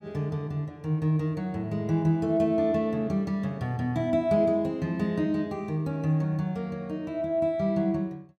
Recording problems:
none

